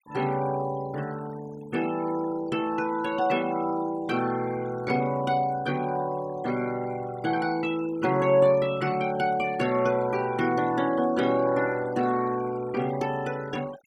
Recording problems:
noise reduction artefacts; signal-to-artefact ratio 20 dB

